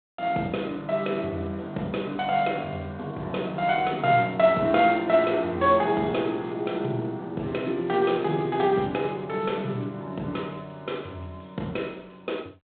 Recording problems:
phone line; 150 Hz to 3.8 kHz, G.726

